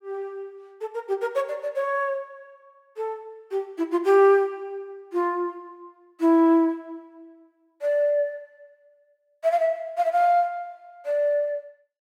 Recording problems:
none

